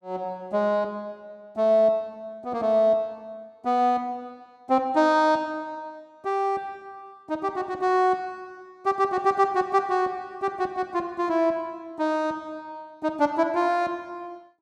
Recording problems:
none

